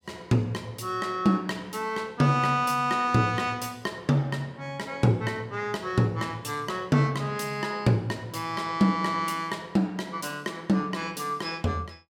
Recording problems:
none

